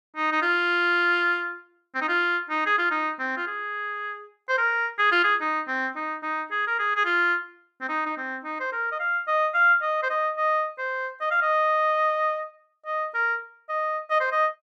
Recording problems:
none

